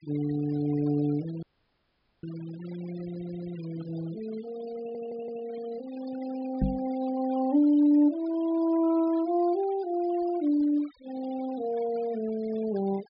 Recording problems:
treble missing; nothing above 5.5 kHz
denoising artefacts; signal-to-artefact ratio 20 dB
audio cutting out; at 1.5 s for 1 s
audio stuttering; at 3 s and at 5 s
microphone bump; at 6.5 s; peak +4 dB vs average level

